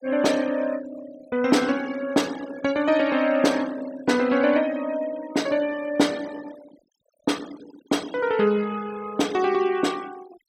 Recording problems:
noise reduction artefacts; signal-to-artefact ratio 19 dB

